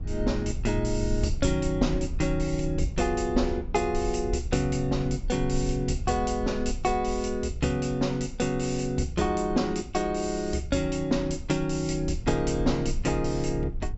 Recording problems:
treble missing; nothing above 7.7 kHz
low-frequency rumble; below 66 Hz, SNR 9 dB

